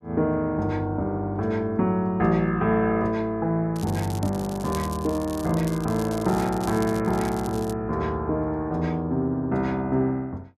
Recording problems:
crackling; from 3.5 to 7.5 s; loose cable, SNR 17 dB

